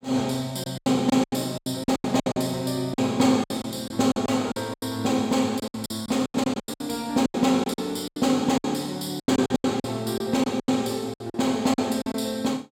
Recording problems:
lost packets; 16% of the sound replaced, filled with silence

